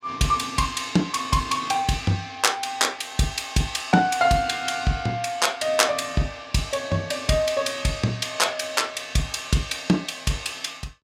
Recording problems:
none

